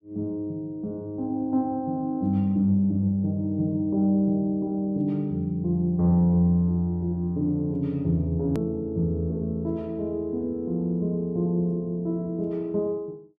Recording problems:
click at an edit; at 8.5 s

